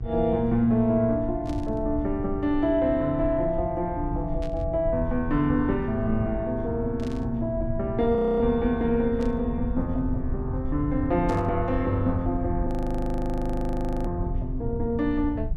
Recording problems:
mains hum; 60 Hz, harmonics up to 1.6 kHz, SNR 22 dB
low-frequency rumble; below 90 Hz, SNR 8 dB
static burst; 5 times, first at 1.5 s; peak -14 dB vs average level
audio freezing; at 8 s and at 13 s for 1.5 s

